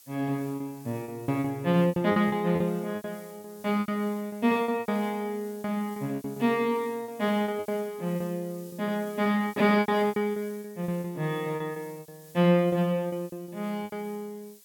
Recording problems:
background hiss; SNR 23 dB
packet loss; 14% of the sound replaced, filled with repeated pitch periods

